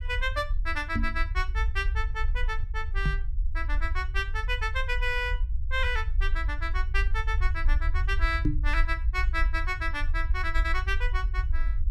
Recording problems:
low-frequency rumble; below 56 Hz, SNR -1 dB
microphone bump; at 1 s, at 3 s and at 8.5 s; peak +8 dB vs average level

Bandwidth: 14.5 kHz